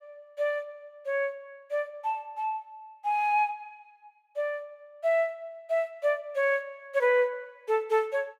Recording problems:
none

